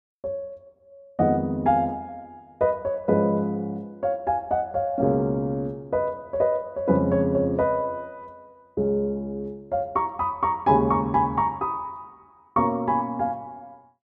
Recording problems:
none

